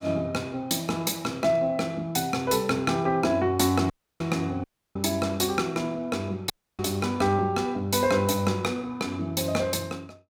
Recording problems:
audio cutting out; at 4 s, at 4.5 s and at 6.5 s

